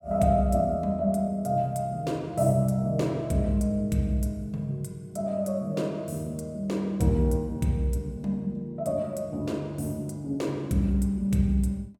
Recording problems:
none

